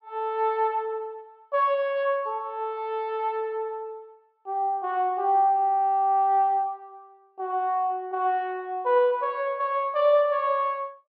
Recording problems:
treble missing; nothing above 5.5 kHz

